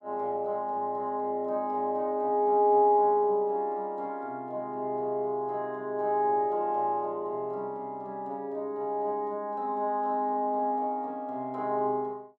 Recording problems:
none

